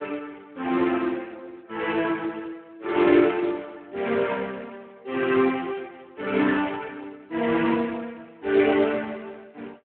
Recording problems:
phone line; 240 Hz to 3.1 kHz, Speex

